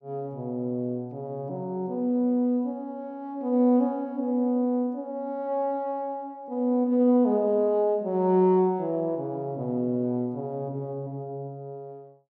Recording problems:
none

